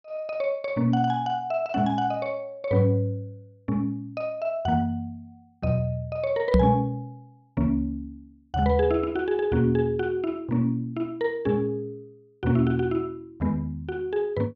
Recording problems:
microphone thump; at 6.5 s; peak +8 dB vs average level

